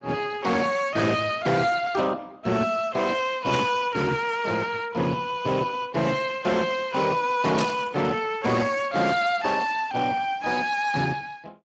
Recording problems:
codec artefacts; Speex, log-spectral distance 4 dB, nothing above 7.3 kHz
distortion; hard clipping, uneven, signal-to-distortion ratio 12 dB
burst of static; at 3.5 s and at 7.5 s; peak -3 dB vs average level

